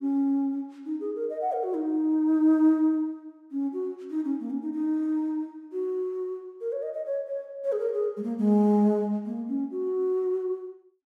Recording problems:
none

